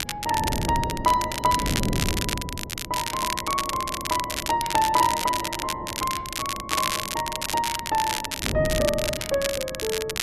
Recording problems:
wind on the microphone; below 300 Hz, SNR 8 dB
crackle; vinyl, SNR 3 dB

